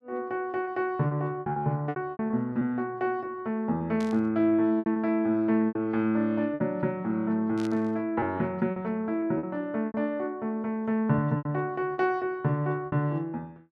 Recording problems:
lost packets; 9% of the sound replaced, filled with repeated pitch periods
burst of static; at 4 s and at 7.5 s; peak -12 dB vs average level

